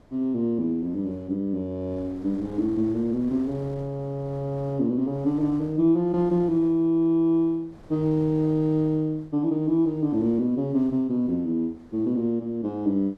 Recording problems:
wind on the microphone; below 550 Hz, SNR 24 dB

